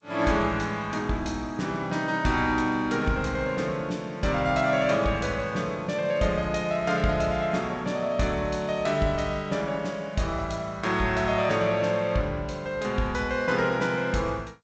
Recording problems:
lossy codec; G.722, log-spectral distance 2 dB, nothing above 7.6 kHz

